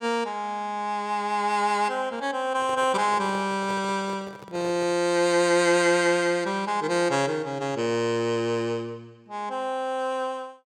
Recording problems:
microphone handling noise; from 2.5 to 5 s; peak -11 dB vs average level

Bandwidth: 17 kHz